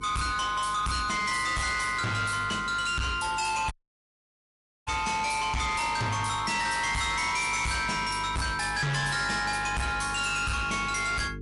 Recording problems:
codec artefacts; MP3, log-spectral distance 5 dB, nothing above 11 kHz
distortion; hard clipping, signal-to-distortion ratio 7 dB
electrical hum; 50 Hz, harmonics up to 450 Hz, SNR 16 dB
audio cutting out; at 3.5 s for 1 s

